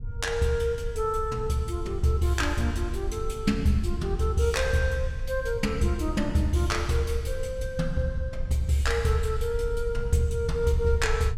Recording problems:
rumble; below 72 Hz, SNR 8 dB

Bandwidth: 16 kHz